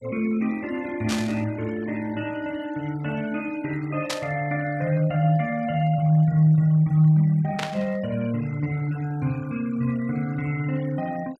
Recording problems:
denoising artefacts; signal-to-artefact ratio 22 dB
static burst; at 1 s, at 4 s and at 7.5 s; peak 0 dB vs average level

